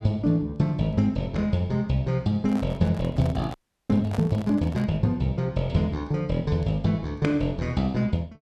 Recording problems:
handling noise; from 2.5 to 5 s; peak -6 dB vs average level
frozen audio; at 3.5 s

